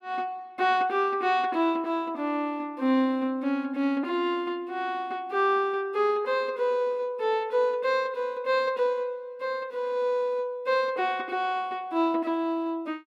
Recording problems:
none

